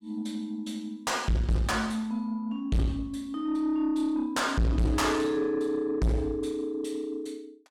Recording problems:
distorted audio; soft clipping, signal-to-distortion ratio 6 dB

